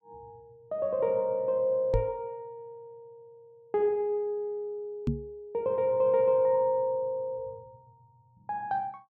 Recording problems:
knock on the microphone; at 2 s and at 5 s; peak +3 dB vs average level

